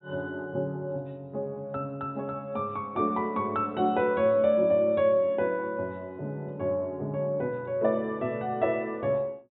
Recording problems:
treble missing; nothing above 3.9 kHz

